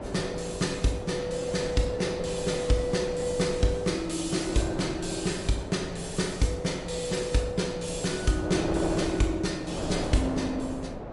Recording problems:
lossy codec; MP3, log-spectral distance 4 dB, nothing above 11 kHz
wind noise; below 650 Hz, SNR 7 dB

